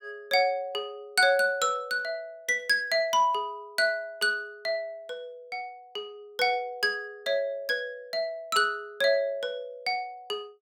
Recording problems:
none

